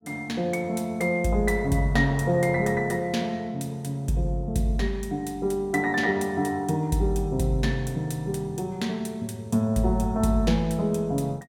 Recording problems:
none

